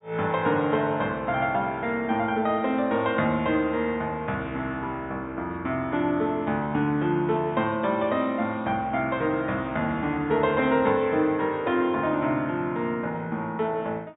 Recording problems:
treble cut off; nothing above 4 kHz

